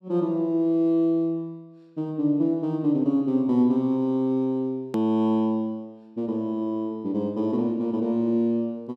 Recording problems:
hard cut with a click; at 5 s

